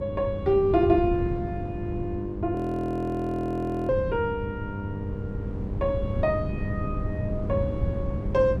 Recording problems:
hum; 50 Hz, harmonics up to 1.1 kHz, SNR 9 dB
wind on the microphone; below 170 Hz, SNR 5 dB
frozen audio; at 2.5 s for 1.5 s

